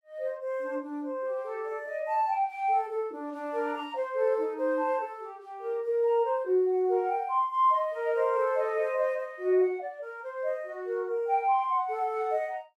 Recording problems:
none

